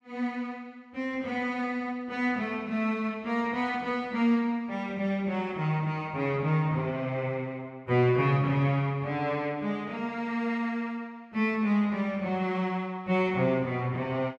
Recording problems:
none

